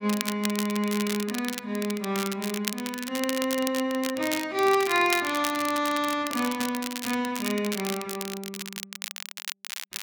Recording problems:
crackle; vinyl, SNR 7 dB

